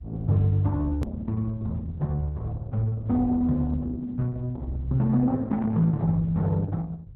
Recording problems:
lossy compression; Opus, log-spectral distance 2 dB, nothing above 13.1 kHz
low-frequency rumble; below 100 Hz, SNR 14 dB
edit click; at 1 s

